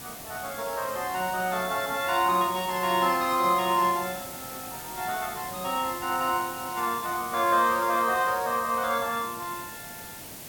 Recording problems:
hiss; SNR 11 dB

